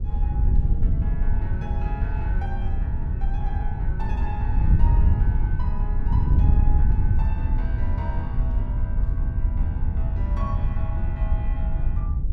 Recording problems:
wind on the microphone; below 82 Hz, SNR -13 dB

